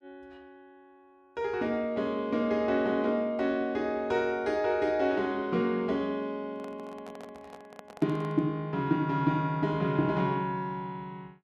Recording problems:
microphone handling noise; from 6.5 to 8.5 s; peak -12 dB vs average level

